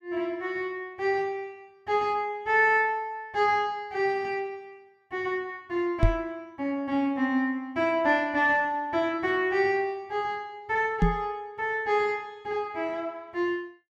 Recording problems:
microphone bump; at 6 s and at 11 s; peak +8 dB vs average level

